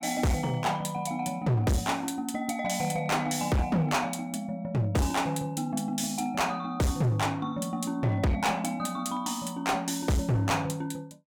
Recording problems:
distortion; hard clipping, signal-to-distortion ratio 7 dB

